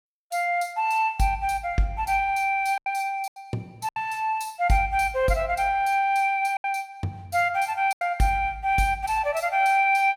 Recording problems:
packet loss; 4% of the sound replaced, filled with silence

